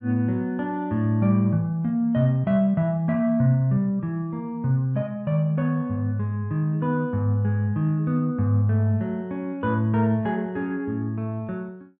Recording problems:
none

